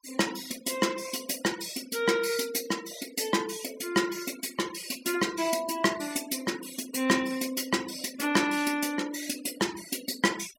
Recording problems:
noise reduction artefacts; signal-to-artefact ratio 16 dB

